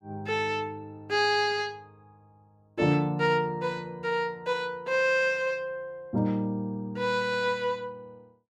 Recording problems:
none

